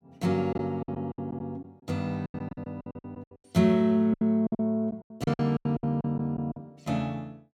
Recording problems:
lost packets; 17% of the sound replaced, filled with silence

